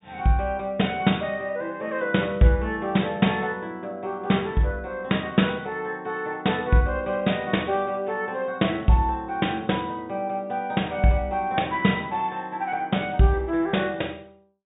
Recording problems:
treble cut off; nothing above 4 kHz

